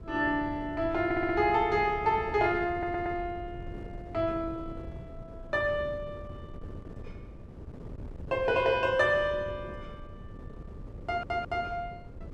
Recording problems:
wind on the microphone; below 250 Hz, SNR 15 dB
audio stuttering; at 1 s, at 2.5 s and at 11 s

